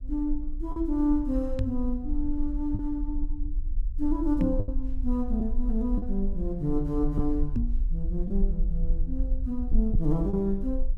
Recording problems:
low-frequency rumble; below 44 Hz, strongest tone 20 Hz, SNR 3 dB
lost packets; 3% of the sound replaced, filled with the last packet
microphone thump; at 1.5 s, at 4.5 s and at 7.5 s; peak +6 dB vs average level

